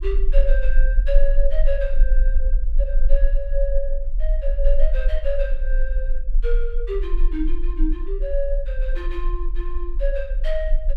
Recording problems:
low-frequency rumble; below 36 Hz, strongest tone 18 Hz, SNR -6 dB

